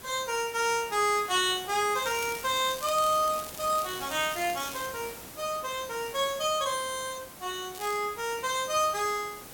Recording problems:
background hiss; slope -3 dB per octave, SNR 14 dB
crackling; from 2 to 5 s and at 8 s; loose cable, SNR 14 dB

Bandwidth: 17 kHz